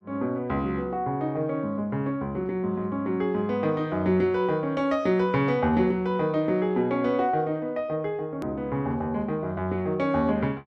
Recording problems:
edit click; at 8.5 s

